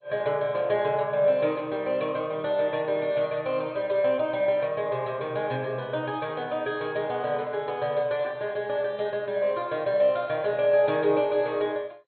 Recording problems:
codec artefacts; MP2, log-spectral distance 2 dB, nothing above 3.8 kHz

